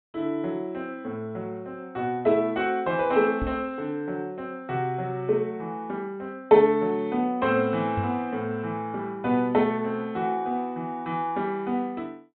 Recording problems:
treble missing; nothing above 4 kHz
microphone thump; at 3.5 s and at 8 s; peak -1 dB vs average level

